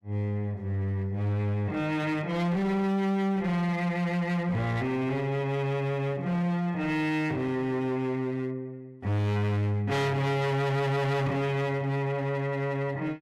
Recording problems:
distorted audio; hard clipping, signal-to-distortion ratio 7 dB

